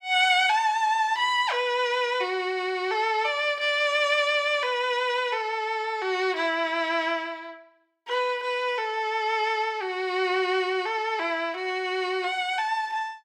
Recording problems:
none

